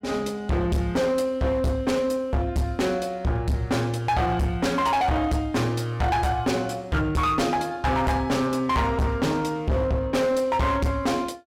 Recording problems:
distortion; hard clipping, signal-to-distortion ratio 6 dB

